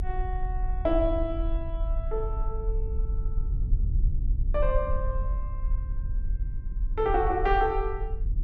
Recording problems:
rumble; below 50 Hz, strongest tone 30 Hz, SNR 1 dB

